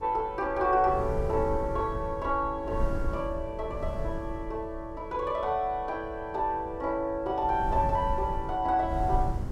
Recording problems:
wind on the microphone; below 110 Hz, SNR 8 dB

